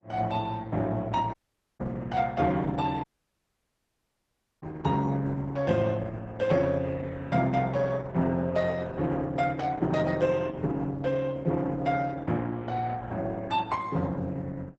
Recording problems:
codec artefacts; Opus, log-spectral distance 3 dB, nothing above 8 kHz
dropout; at 1.5 s and at 3 s for 1.5 s

